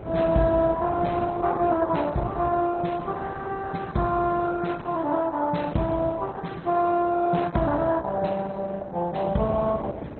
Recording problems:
lossy compression; Opus, then MP2, log-spectral distance 3 dB
wind noise; below 490 Hz, SNR 15 dB

